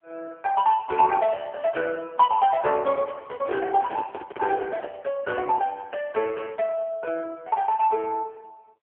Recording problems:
telephone audio; 280 Hz to 3 kHz, AMR-NB
handling noise; from 3.5 to 5 s; peak -3 dB vs average level

